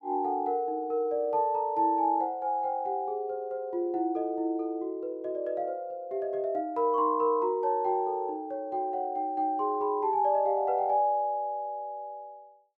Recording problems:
none

